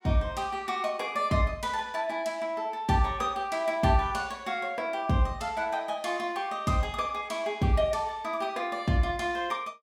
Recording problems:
none

